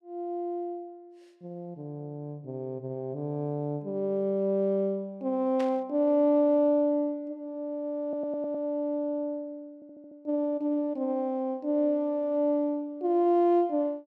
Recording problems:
static burst; at 5.5 s; peak -9 dB vs average level
stutter; at 8 s and at 10 s

